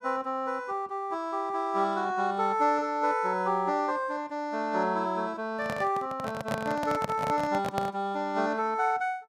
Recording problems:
handling noise; from 5.5 to 8 s; peak +1 dB vs average level

